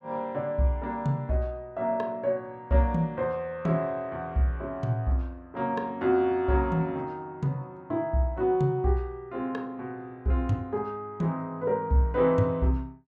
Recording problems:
none

